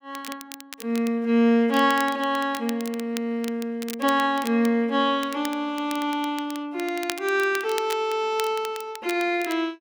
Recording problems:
crackling; vinyl, SNR 15 dB

